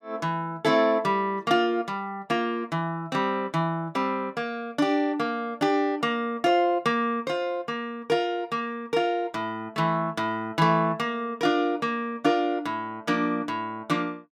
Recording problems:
none

